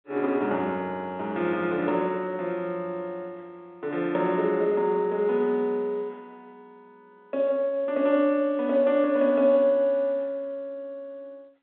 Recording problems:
telephone audio; 260 Hz to 3.9 kHz, G.711

